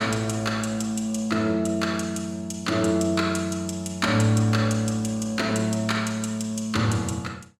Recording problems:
none

